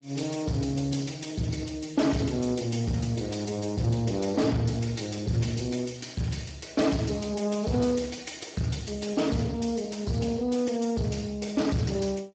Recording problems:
lossy codec; Speex, log-spectral distance 6 dB, nothing above 7.6 kHz
distorted audio; soft clipping, signal-to-distortion ratio 11 dB

